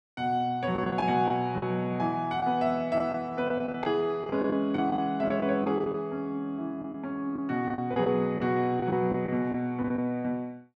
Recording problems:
lost packets; 9% of the sound replaced, filled with the last packet

